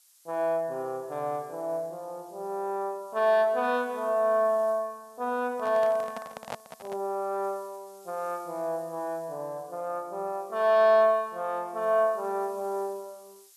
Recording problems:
background hiss; slope +5 dB per octave, SNR 28 dB
handling noise; from 5.5 to 7 s; peak -3 dB vs average level

